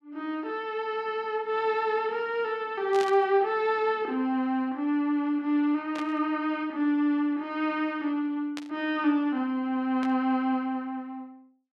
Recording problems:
burst of static; 4 times, first at 3 s; peak -6 dB vs average level

